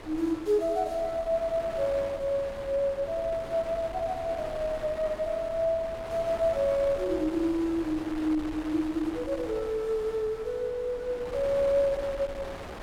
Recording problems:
wind noise; below 1.2 kHz, SNR 13 dB

